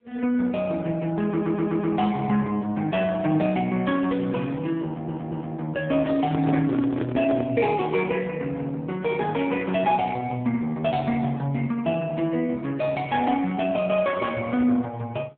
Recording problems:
phone line; 170 Hz to 3.7 kHz, AMR-NB
stutter; at 1.5 s and at 5 s
handling noise; from 6 to 7.5 s; peak -1 dB vs average level

